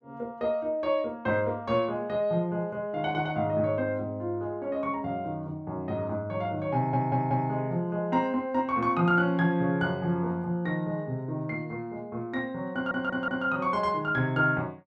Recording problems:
stutter; at 7 s and at 13 s

